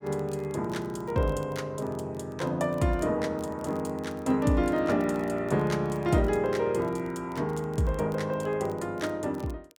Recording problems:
crackle; vinyl, SNR 28 dB

